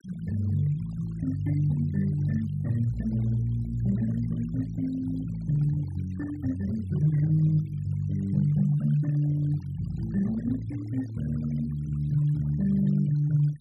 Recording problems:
noise reduction artefacts; signal-to-artefact ratio 26 dB

